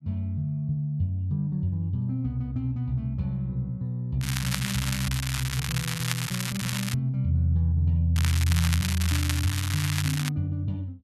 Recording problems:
crackle; from 4 to 7 s and from 8 to 10 s; loose cable, SNR 4 dB

